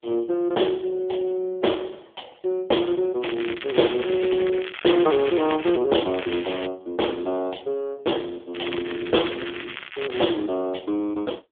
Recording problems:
phone line; 260 Hz to 3.5 kHz, AMR-NB
crackle; from 3 to 6 s, at 6 s and from 8.5 to 10 s; loose cable, SNR 11 dB

